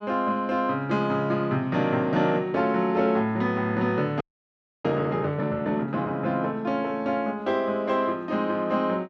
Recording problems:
frozen audio; at 4 s for 0.5 s

